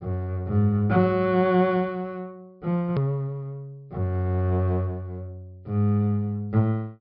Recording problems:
treble missing; nothing above 5.5 kHz
edit click; at 3 s

